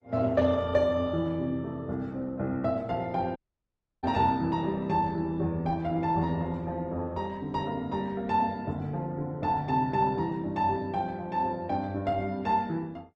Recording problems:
lossy codec; Opus, then Opus, log-spectral distance 2 dB
audio cutting out; at 3.5 s for 0.5 s

